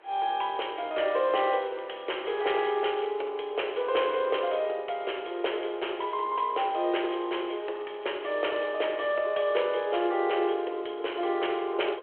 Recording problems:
telephone audio; 320 Hz to 3.3 kHz, G.726
wind on the microphone; below 1.7 kHz, SNR 24 dB
crackle; from 1.5 to 3 s and from 7.5 to 8.5 s; loose cable, SNR 27 dB

